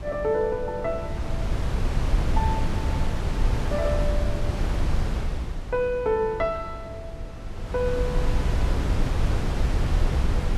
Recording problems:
wind on the microphone; below 110 Hz, SNR -1 dB

